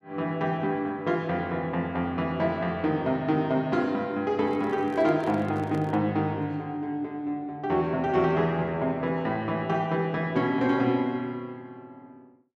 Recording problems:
microphone handling noise; from 4.5 to 6 s; peak -7 dB vs average level

